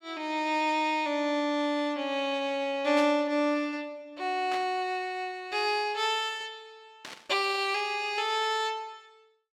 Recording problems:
burst of static; at 3 s, at 4.5 s and at 7 s; peak -6 dB vs average level

